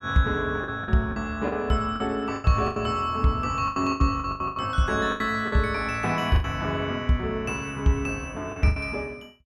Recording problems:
lost packets; 11% of the sound replaced, filled with the last packet

